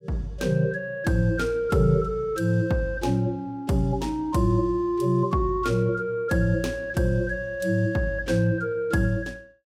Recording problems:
none

